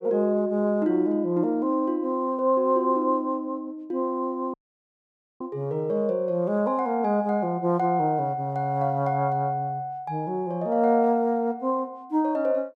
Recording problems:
audio cutting out; at 4.5 s for 1 s

